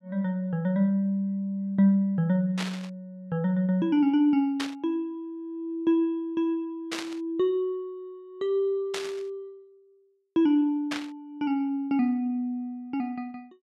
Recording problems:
burst of static; 5 times, first at 2.5 s; peak -2 dB vs average level

